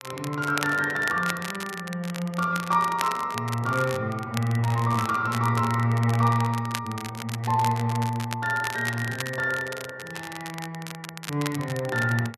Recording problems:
crackling; vinyl, SNR 11 dB

